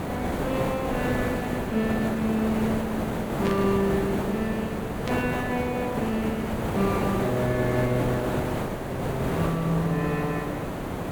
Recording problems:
hiss; SNR 1 dB
burst of static; at 3.5 s and at 5 s; peak -4 dB vs average level

